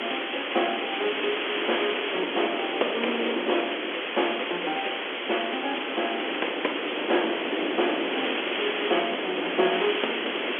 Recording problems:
telephone audio; 280 Hz to 3.4 kHz, G.711
background hiss; SNR 0 dB
wind noise; below 630 Hz, SNR 3 dB

